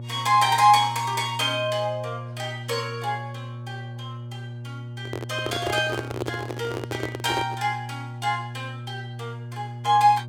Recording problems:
hum; 60 Hz, harmonics up to 600 Hz, SNR 12 dB
microphone handling noise; from 5 to 7.5 s; peak -1 dB vs average level

